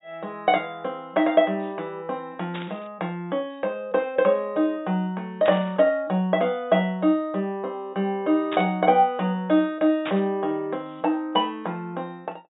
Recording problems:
treble missing; nothing above 4 kHz
static burst; 4 times, first at 2.5 s; peak -4 dB vs average level

